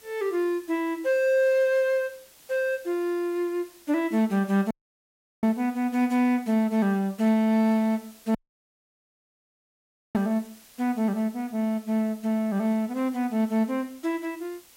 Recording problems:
background hiss; slope 0 dB per octave, SNR 25 dB
audio cutting out; at 4.5 s for 0.5 s and at 8.5 s for 2 s

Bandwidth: 16 kHz